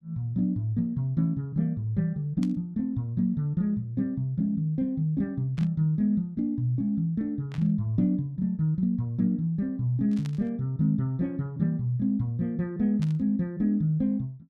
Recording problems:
burst of static; 5 times, first at 2.5 s; peak -13 dB vs average level

